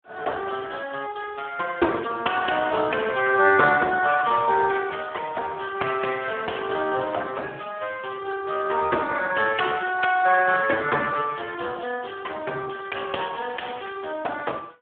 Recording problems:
telephone audio; 280 Hz to 2.8 kHz, Speex

